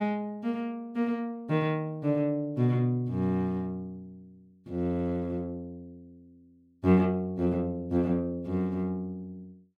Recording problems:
none

